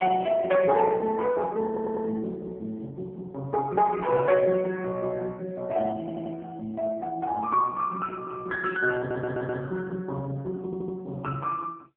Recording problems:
phone line; 150 Hz to 2.6 kHz, AMR-NB
audio stuttering; 4 times, first at 1.5 s

